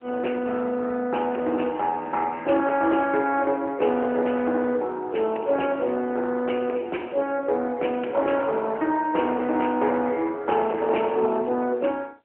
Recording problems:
telephone audio; 300 Hz to 3.2 kHz, AMR-NB
distortion; soft clipping, signal-to-distortion ratio 15 dB

